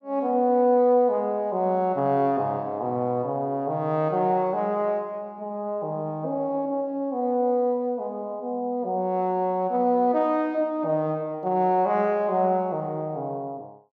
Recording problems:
none

